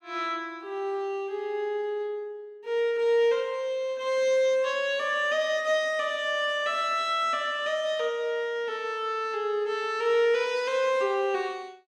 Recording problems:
none

